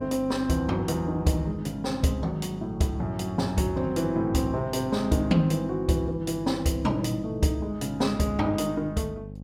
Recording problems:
electrical hum; 50 Hz, harmonics up to 600 Hz, SNR 14 dB

